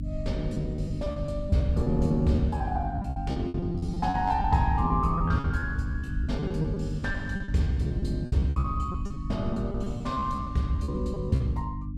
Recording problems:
mains hum; 50 Hz, harmonics up to 300 Hz, SNR 6 dB
low-frequency rumble; below 96 Hz, SNR 9 dB
lost packets; 15% of the sound replaced, filled with repeated pitch periods

